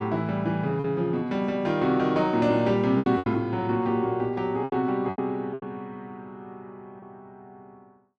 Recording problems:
packet loss; 6% of the sound replaced, filled with repeated pitch periods

